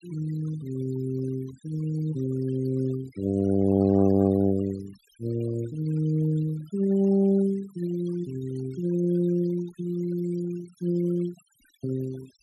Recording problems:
noise reduction artefacts; signal-to-artefact ratio 22 dB

